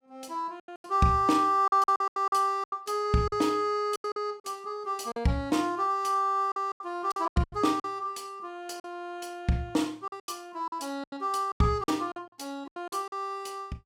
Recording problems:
packet loss; 12% of the sound replaced, filled with silence

